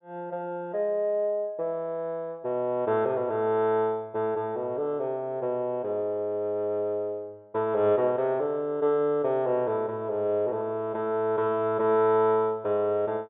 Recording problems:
low-pass filter; nothing above 4 kHz

